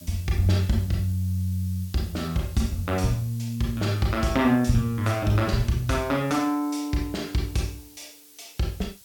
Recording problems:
background hiss; slope +2 dB per octave, SNR 21 dB

